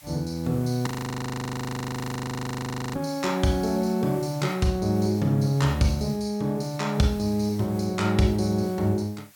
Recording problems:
background hiss; slope +1 dB per octave, SNR 23 dB
frozen audio; at 1 s for 2 s

